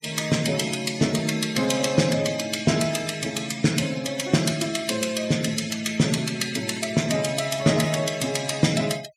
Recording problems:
noise reduction artefacts; signal-to-artefact ratio 15 dB

